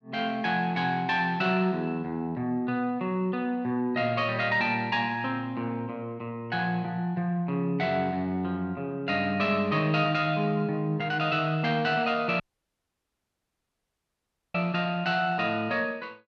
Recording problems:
audio cutting out; at 12 s for 2 s

